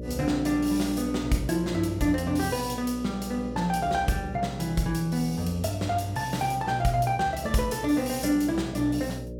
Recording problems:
hum; 60 Hz, harmonics up to 600 Hz, SNR 13 dB

